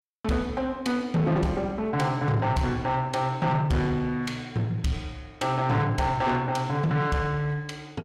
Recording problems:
distorted audio; soft clipping, signal-to-distortion ratio 11 dB

